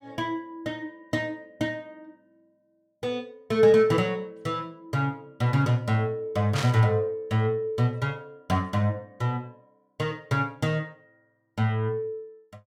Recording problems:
static burst; at 6.5 s; peak -1 dB vs average level

